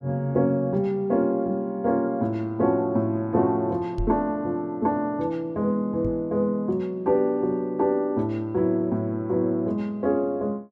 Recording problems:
knock on the microphone; at 4 s and at 6 s; peak -1 dB vs average level

